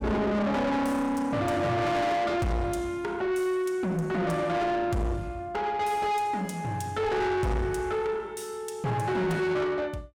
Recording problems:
distorted audio; soft clipping, signal-to-distortion ratio 7 dB

